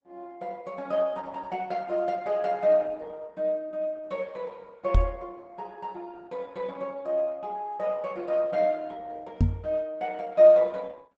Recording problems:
lossy compression; Opus, log-spectral distance 2 dB
microphone bump; at 5 s and at 9.5 s; peak +8 dB vs average level

